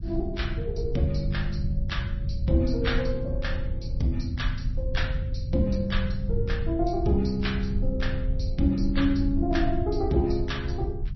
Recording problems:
lossy codec; MP3, log-spectral distance 2 dB, nothing above 5.7 kHz
low-frequency rumble; below 90 Hz, SNR 2 dB

